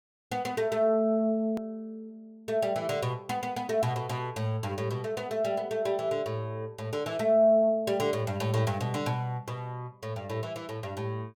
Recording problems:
click at an edit; at 1.5 s

